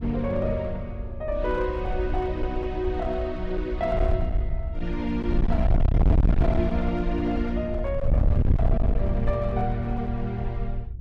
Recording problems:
distortion; hard clipping, uneven, signal-to-distortion ratio 6 dB
wind noise; below 88 Hz, SNR 0 dB

